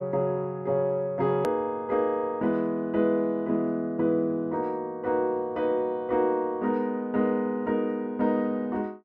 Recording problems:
hard cut with a click; at 1.5 s

